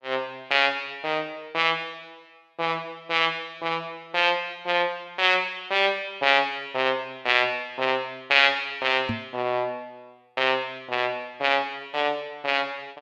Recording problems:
microphone thump; at 9 s; peak -1 dB vs average level

